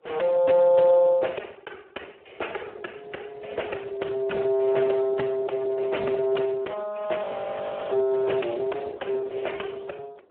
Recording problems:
telephone audio; 260 Hz to 3.1 kHz, Speex
wind noise; below 590 Hz, SNR 21 dB
audio freezing; at 7.5 s for 0.5 s

